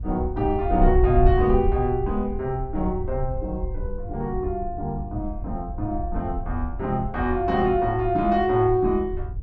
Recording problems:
wind noise; below 68 Hz, SNR 6 dB

